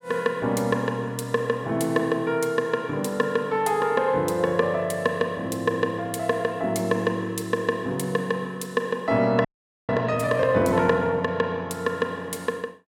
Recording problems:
frozen audio; at 9.5 s

